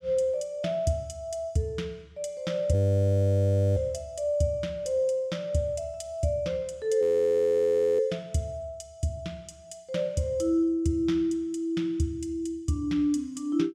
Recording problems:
audio freezing; at 2.5 s for 1 s and at 7 s for 1 s

